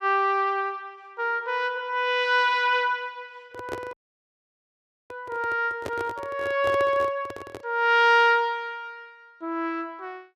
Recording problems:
handling noise; from 3.5 to 7.5 s; peak -5 dB vs average level
dropout; at 4 s for 1 s

